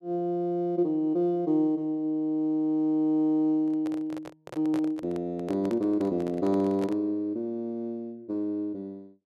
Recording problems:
handling noise; from 3.5 to 7 s; peak -6 dB vs average level

